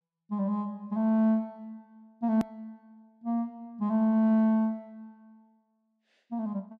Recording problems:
edit click; at 2.5 s

